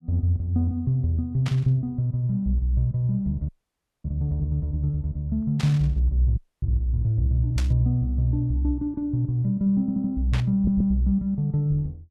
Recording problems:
static burst; 4 times, first at 1.5 s; peak -6 dB vs average level
frozen audio; at 3.5 s for 0.5 s and at 6.5 s
audio stuttering; at 10 s and at 11 s

